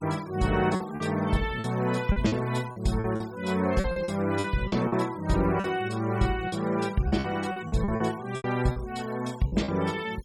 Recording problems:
denoising artefacts; signal-to-artefact ratio 20 dB
lost packets; 11% of the sound replaced, filled with repeated pitch periods

